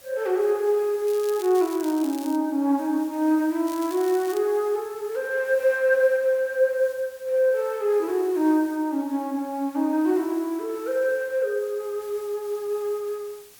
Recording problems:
background hiss; slope 0 dB per octave, SNR 23 dB
crackling; from 1 to 2.5 s and at 3.5 s; loose cable, SNR 18 dB

